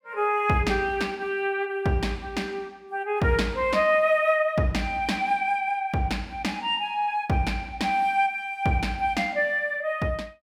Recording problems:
none

